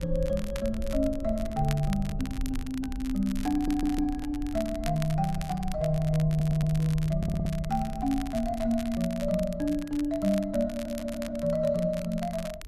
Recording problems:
rumble; below 68 Hz, SNR 11 dB
crackling; vinyl, SNR 16 dB
stutter; 4 times, first at 3.5 s

